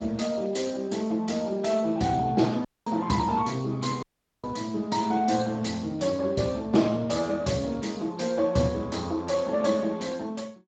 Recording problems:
lossy codec; Speex, log-spectral distance 4 dB, nothing above 7.3 kHz
dropout; at 2.5 s and at 4 s

